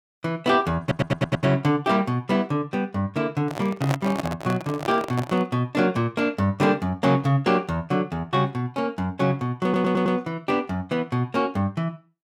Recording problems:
stutter; at 1 s and at 9.5 s
microphone handling noise; from 3.5 to 5.5 s; peak -1 dB vs average level

